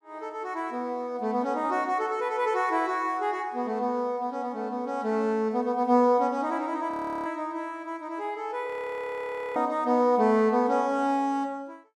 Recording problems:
audio freezing; at 7 s and at 8.5 s for 1 s

